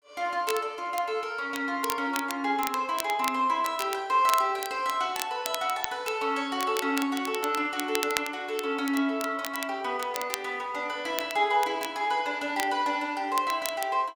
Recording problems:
crackling; vinyl, SNR 10 dB

